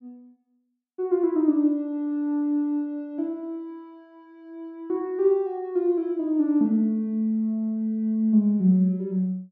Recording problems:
none

